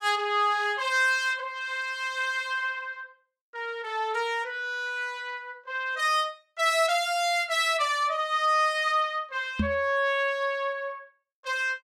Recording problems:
knock on the microphone; at 9.5 s; peak +3 dB vs average level

